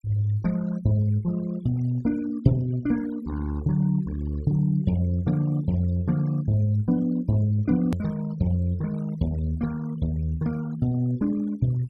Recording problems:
noise reduction artefacts; signal-to-artefact ratio 24 dB
click at an edit; at 8 s

